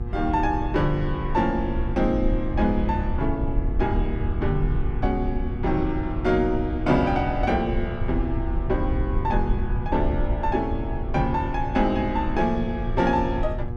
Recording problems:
mains hum; 60 Hz, harmonics up to 1.3 kHz, SNR 12 dB
rumble; below 74 Hz, SNR 4 dB

